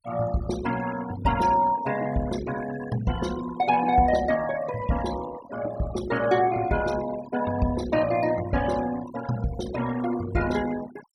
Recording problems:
noise reduction artefacts; signal-to-artefact ratio 14 dB

